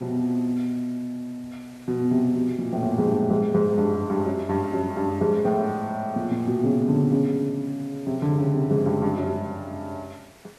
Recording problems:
hiss; slope -3 dB per octave, SNR 27 dB

